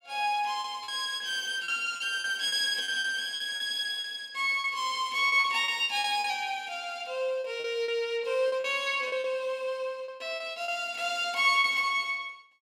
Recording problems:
packet loss; 10% of the sound replaced, filled with repeated pitch periods

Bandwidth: 16 kHz